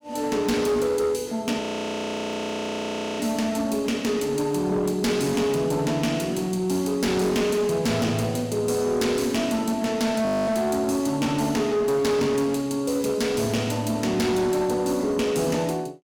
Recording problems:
distortion; hard clipping, uneven, signal-to-distortion ratio 11 dB
frozen audio; at 1.5 s for 1.5 s and at 10 s

